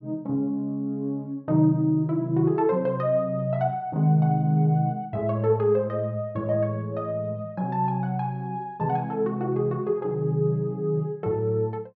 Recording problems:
none

